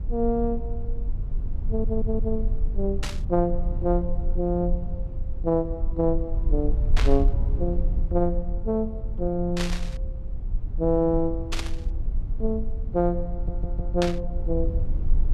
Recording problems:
low-frequency rumble; below 54 Hz, SNR 2 dB
audio stuttering; at 1.5 s and at 13 s
burst of static; 5 times, first at 3 s; peak +2 dB vs average level

